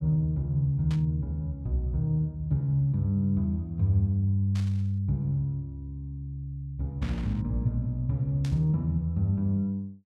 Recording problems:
burst of static; 4 times, first at 1 s; peak -11 dB vs average level

